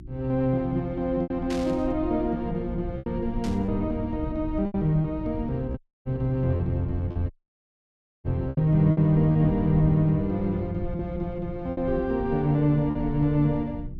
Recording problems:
electrical hum; 60 Hz, harmonics up to 360 Hz, SNR 17 dB
low-frequency rumble; below 110 Hz, SNR 13 dB
lost packets; 5% of the sound replaced, filled with repeated pitch periods
static burst; at 1.5 s and at 3.5 s; peak -9 dB vs average level
audio cutting out; at 6 s and at 7.5 s for 1 s

